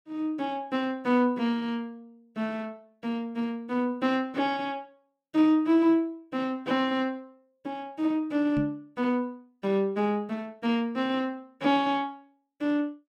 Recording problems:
knock on the microphone; at 8.5 s; peak -1 dB vs average level

